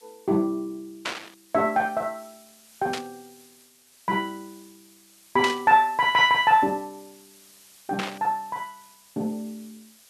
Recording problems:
background hiss; slope +2 dB per octave, SNR 27 dB
static burst; 4 times, first at 1 s; peak -1 dB vs average level

